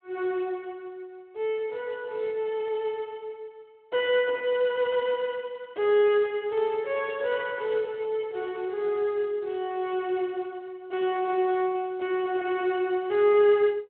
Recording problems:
telephone audio; 300 Hz to 3.3 kHz, Speex

